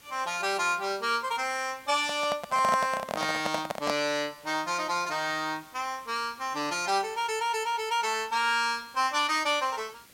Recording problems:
hiss; slope -1 dB per octave, SNR 25 dB
handling noise; from 2 to 4 s; peak +2 dB vs average level

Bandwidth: 16.5 kHz